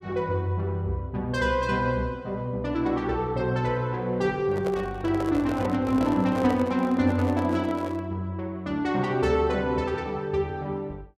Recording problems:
microphone handling noise; from 4.5 to 8 s; peak -3 dB vs average level

